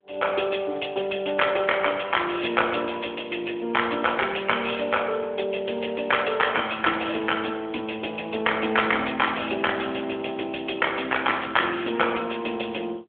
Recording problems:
phone line; 300 Hz to 3.4 kHz, AMR-NB

